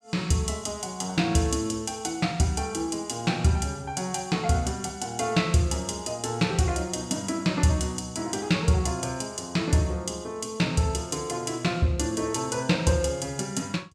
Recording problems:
none

